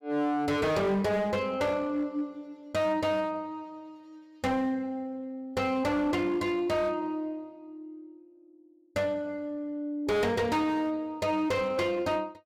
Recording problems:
distorted audio; hard clipping, uneven, signal-to-distortion ratio 10 dB

